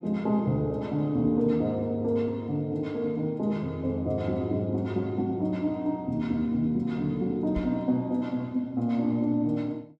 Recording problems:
microphone thump; at 7.5 s; peak -3 dB vs average level

